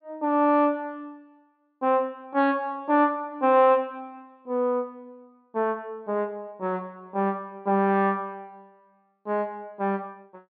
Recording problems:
low-pass filter; nothing above 4.6 kHz

